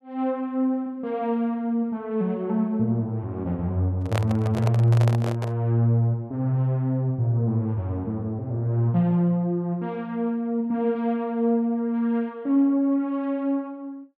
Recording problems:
handling noise; from 4 to 5.5 s; peak -1 dB vs average level

